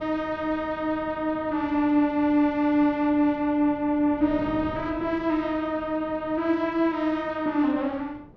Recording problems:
wind noise; below 380 Hz, SNR 20 dB

